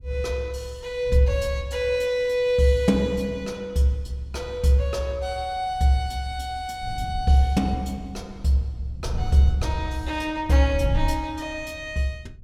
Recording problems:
wind noise; below 98 Hz, SNR 10 dB

